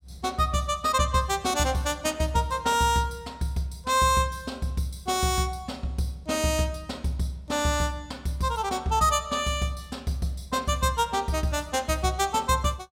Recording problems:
none

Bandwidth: 16.5 kHz